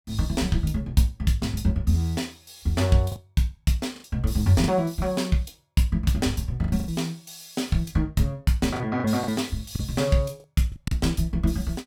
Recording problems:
lost packets; 5% of the sound replaced, filled with the last packet

